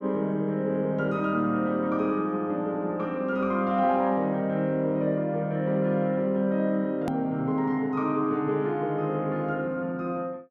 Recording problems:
edit click; at 7 s

